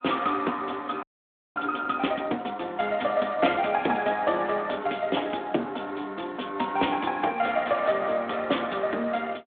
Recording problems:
telephone audio; 220 Hz to 3.6 kHz, Speex
frozen audio; at 1 s for 0.5 s

